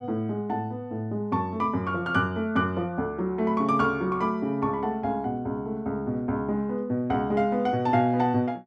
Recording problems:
none

